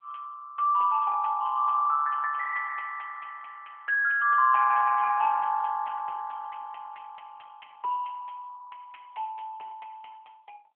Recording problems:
phone line; 390 Hz to 2.4 kHz, AMR-NB

